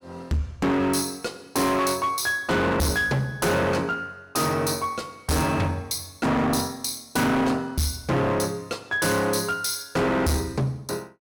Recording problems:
distortion; hard clipping, uneven, signal-to-distortion ratio 7 dB

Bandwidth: 17 kHz